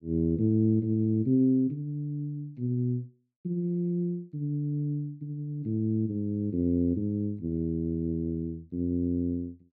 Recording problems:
none

